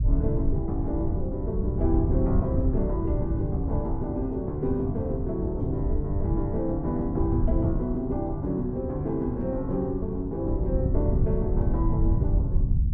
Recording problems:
low-frequency rumble; below 110 Hz, SNR 0 dB

